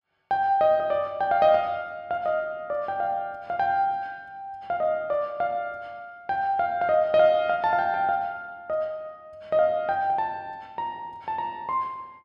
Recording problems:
none

